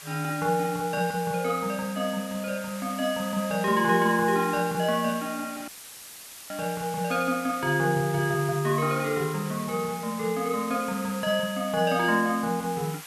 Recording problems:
background hiss; SNR 14 dB
dropout; at 5.5 s for 1 s; filled with static

